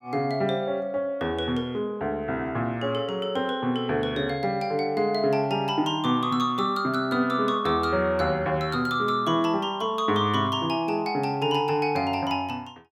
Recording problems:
none

